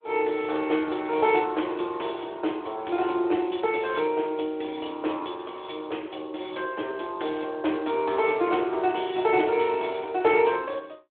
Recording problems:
telephone audio; 260 Hz to 3.5 kHz, Speex

